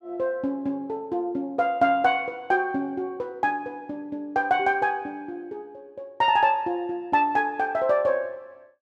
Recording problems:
none

